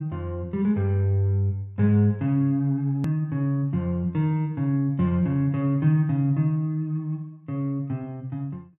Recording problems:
click at an edit; at 3 s

